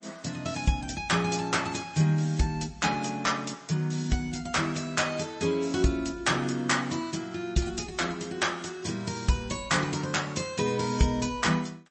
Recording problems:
lossy compression; MP3, log-spectral distance 6 dB, nothing above 8.2 kHz

